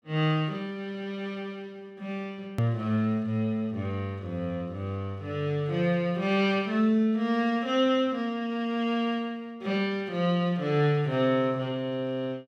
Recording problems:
hard cut with a click; at 2.5 s

